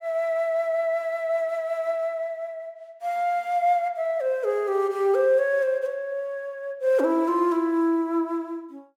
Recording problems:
none

